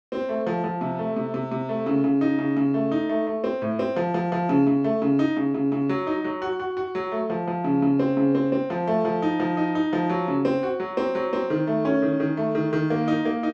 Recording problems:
none

